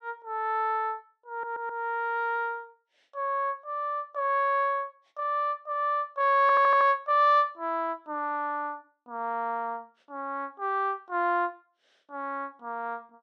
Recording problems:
audio stuttering; at 1.5 s and at 6.5 s

